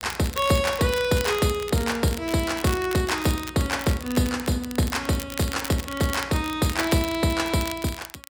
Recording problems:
crackling; vinyl, SNR 12 dB

